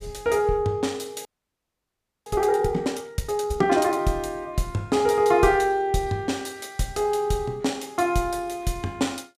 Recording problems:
frozen audio; at 1.5 s for 1 s

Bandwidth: 15 kHz